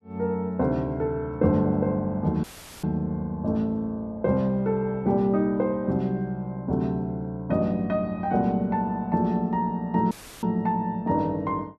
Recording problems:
audio cutting out; at 2.5 s and at 10 s; filled with static

